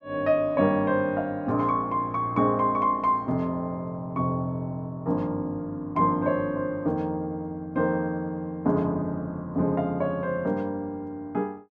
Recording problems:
none

